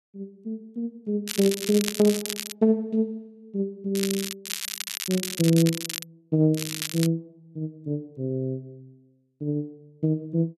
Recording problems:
crackle; 4 times, first at 1.5 s; loose cable, SNR 5 dB

